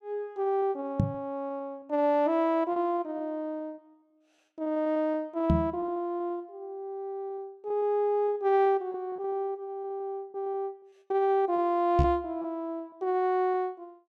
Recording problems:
lost packets; 9% of the sound replaced, filled with repeated pitch periods
knock on the microphone; at 1 s, at 5.5 s and at 12 s; peak +7 dB vs average level

